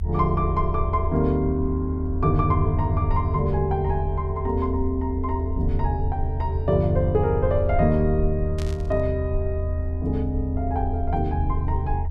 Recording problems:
rumble; below 82 Hz, strongest tone 80 Hz, SNR 2 dB
burst of static; at 8.5 s; peak -10 dB vs average level

